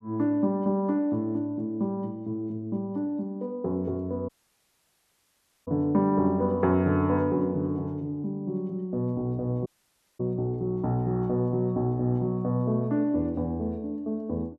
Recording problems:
audio cutting out; at 4.5 s for 1.5 s and at 9.5 s for 0.5 s

